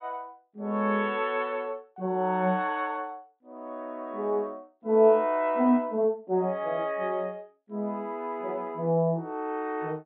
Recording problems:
treble cut off; nothing above 4 kHz

